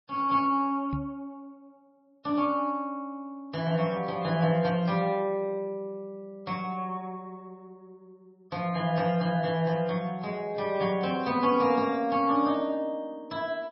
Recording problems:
lossy codec; MP3, log-spectral distance 2 dB, nothing above 5.5 kHz
microphone thump; at 1 s; peak -2 dB vs average level

